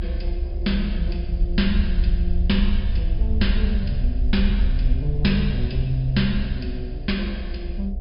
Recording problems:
low-pass filter; nothing above 5.5 kHz
electrical hum; 60 Hz, harmonics up to 720 Hz, SNR 19 dB
rumble; below 64 Hz, SNR -1 dB

